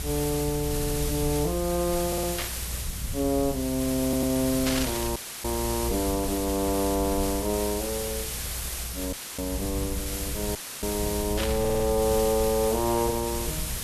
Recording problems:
hiss; slope -1 dB per octave, SNR 5 dB
low-frequency rumble; below 94 Hz, strongest tone 60 Hz, SNR 8 dB
audio stuttering; 4 times, first at 0.5 s
static burst; at 2.5 s, at 4.5 s and at 11 s; peak +2 dB vs average level
dropout; at 5 s, at 9 s and at 11 s; filled with static

